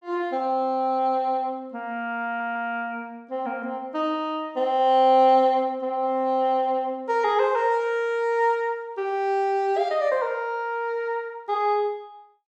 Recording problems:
stutter; at 2.5 s

